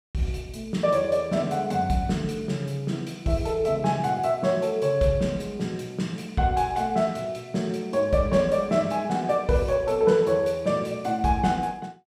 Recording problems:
none

